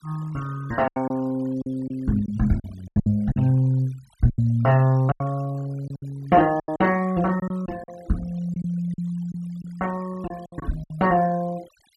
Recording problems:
noise reduction artefacts; signal-to-artefact ratio 24 dB
packet loss; 10% of the sound replaced, filled with silence

